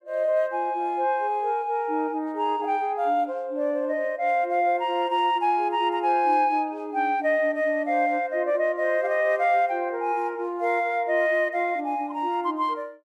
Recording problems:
none

